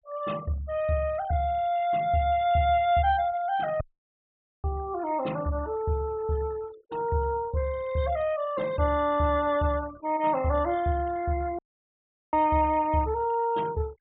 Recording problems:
treble missing; nothing above 4 kHz
denoising artefacts; signal-to-artefact ratio 20 dB
audio cutting out; at 4 s for 1 s and at 12 s for 0.5 s

